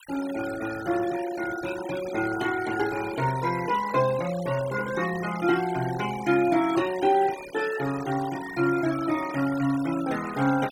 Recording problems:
noise reduction artefacts; signal-to-artefact ratio 14 dB

